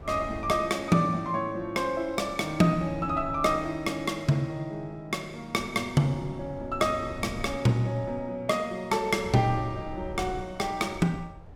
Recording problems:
wind noise; below 140 Hz, SNR 17 dB

